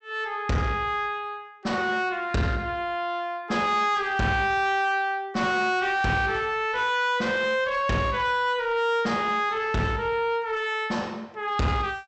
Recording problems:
treble cut off; nothing above 7.9 kHz
distortion; soft clipping, signal-to-distortion ratio 10 dB

